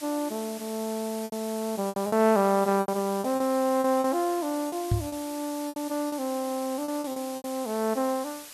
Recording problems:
background hiss; slope +1 dB per octave, SNR 13 dB
packet loss; 10% of the sound replaced, filled with repeated pitch periods
microphone thump; at 5 s; peak +5 dB vs average level

